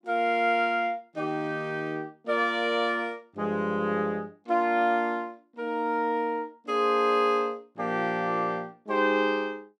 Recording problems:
none

